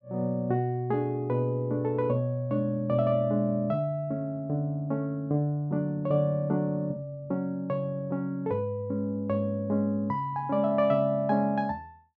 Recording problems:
treble missing; nothing above 8 kHz

